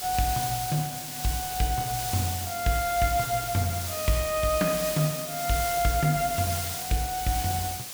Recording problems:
hiss; slope +1 dB per octave, SNR 4 dB

